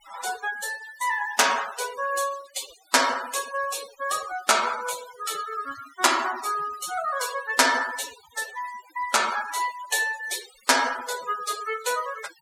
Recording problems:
noise reduction artefacts; signal-to-artefact ratio 13 dB

